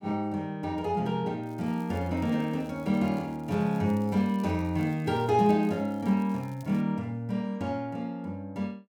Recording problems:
crackling; from 1.5 to 7 s; loose cable, SNR 29 dB

